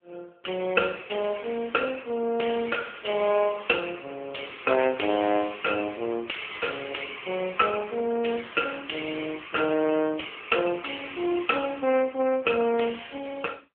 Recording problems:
telephone audio; 240 Hz to 3.3 kHz, AMR-NB

